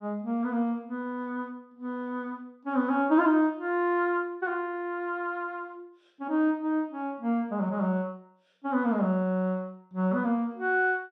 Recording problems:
none

